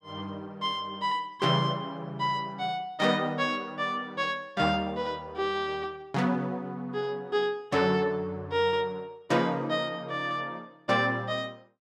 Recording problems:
none

